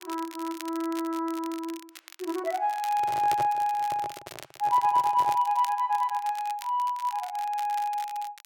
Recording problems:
crackle; vinyl, SNR 18 dB
microphone handling noise; from 3 to 5.5 s; peak -3 dB vs average level

